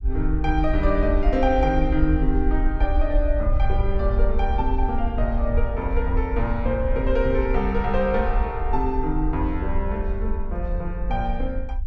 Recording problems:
low-frequency rumble; below 56 Hz, SNR 1 dB

